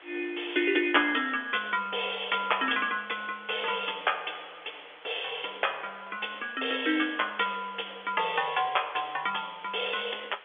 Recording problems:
telephone audio; 320 Hz to 3.5 kHz, G.711
background hiss; SNR 20 dB

